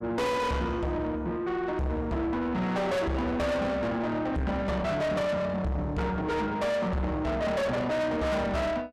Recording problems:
distortion; soft clipping, signal-to-distortion ratio 6 dB

